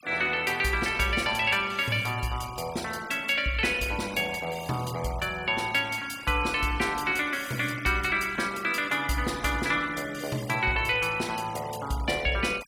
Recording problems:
noise reduction artefacts; signal-to-artefact ratio 18 dB

